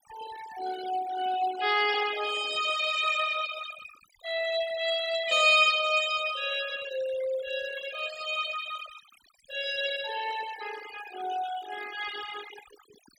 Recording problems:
denoising artefacts; signal-to-artefact ratio 14 dB

